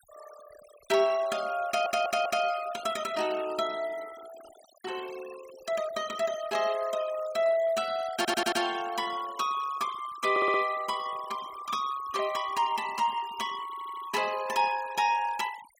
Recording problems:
denoising artefacts; signal-to-artefact ratio 17 dB
stutter; 4 times, first at 1.5 s

